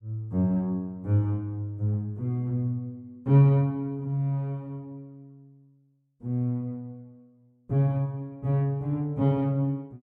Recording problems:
none

